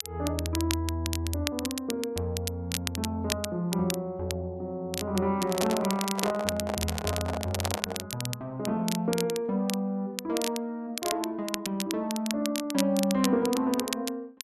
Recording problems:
crackle; vinyl, SNR 5 dB
handling noise; from 5.5 to 8 s; peak +1 dB vs average level

